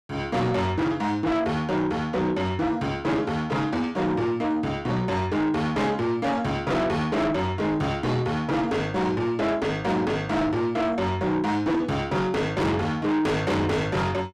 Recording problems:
distortion; soft clipping, signal-to-distortion ratio 6 dB

